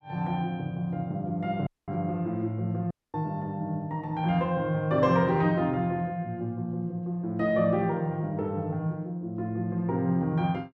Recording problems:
audio cutting out; at 1.5 s and at 3 s

